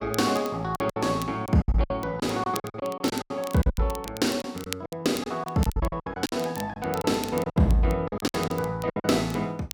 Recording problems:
crackling; vinyl, SNR 16 dB
packet loss; 15% of the sound replaced, filled with silence

